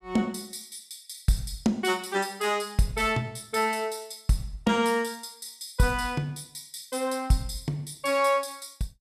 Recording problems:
none

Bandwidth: 14.5 kHz